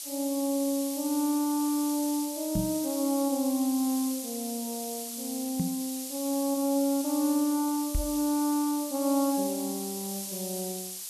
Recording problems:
hiss; SNR 6 dB
microphone thump; at 2.5 s, at 5.5 s and at 8 s; peak +4 dB vs average level

